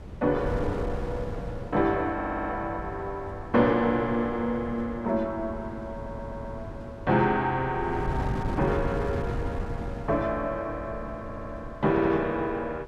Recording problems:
electrical hum; 50 Hz, harmonics up to 600 Hz, SNR 22 dB
wind noise; below 260 Hz, SNR 9 dB
audio stuttering; 4 times, first at 2 s

